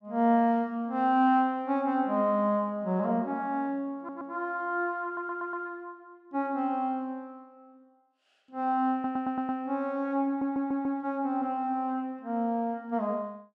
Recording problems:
audio stuttering; 4 times, first at 4 s

